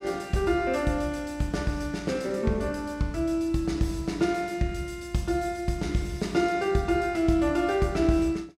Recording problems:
none

